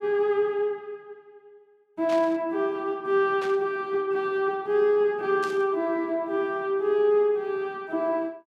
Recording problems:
burst of static; at 2 s, at 3.5 s and at 5.5 s; peak -9 dB vs average level

